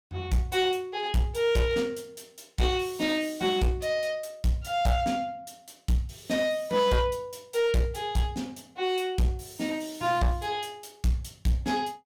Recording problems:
distorted audio; hard clipping, uneven, signal-to-distortion ratio 10 dB

